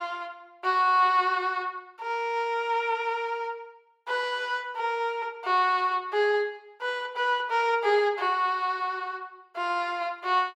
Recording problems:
none

